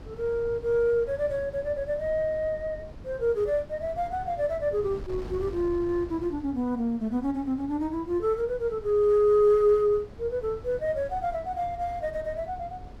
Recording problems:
wind noise; below 240 Hz, SNR 17 dB

